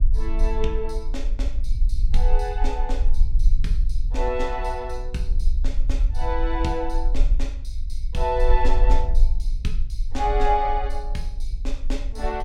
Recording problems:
low-frequency rumble; below 42 Hz, strongest tone 18 Hz, SNR -2 dB

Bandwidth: 16 kHz